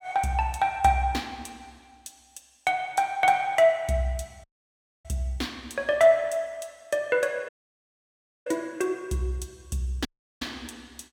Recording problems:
dropout; at 4.5 s for 0.5 s, at 7.5 s for 1 s and at 10 s

